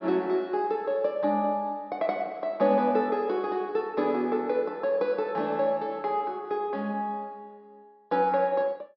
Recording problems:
treble cut off; nothing above 5.7 kHz

